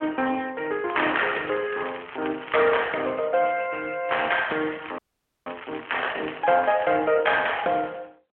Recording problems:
phone line; 280 Hz to 3.2 kHz, AMR-NB
crackle; from 1 to 2.5 s and from 4 to 7 s; loose cable, SNR 16 dB
frozen audio; at 5 s

